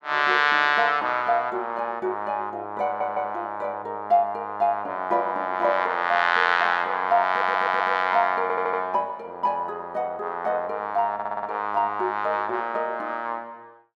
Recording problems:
audio stuttering; 4 times, first at 3 s

